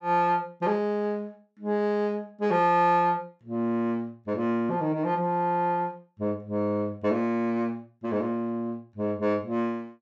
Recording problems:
none

